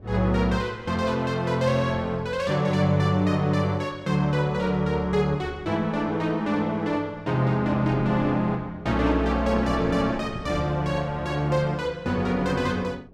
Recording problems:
wind noise; below 320 Hz, SNR 20 dB

